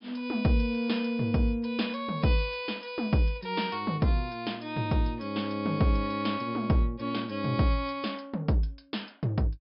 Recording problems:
treble cut off; nothing above 5.5 kHz

